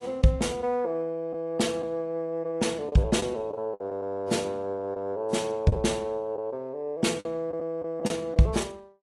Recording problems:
lossy codec; AAC, log-spectral distance 2 dB, nothing above 11 kHz
lost packets; 5% of the sound replaced, filled with the last packet

